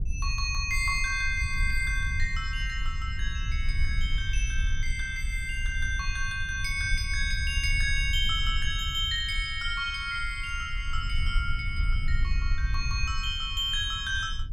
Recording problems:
low-frequency rumble; below 66 Hz, SNR 3 dB

